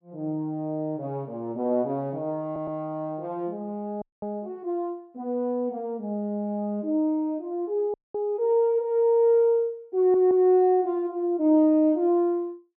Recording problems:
audio stuttering; at 2.5 s and at 10 s
audio freezing; at 4 s and at 8 s

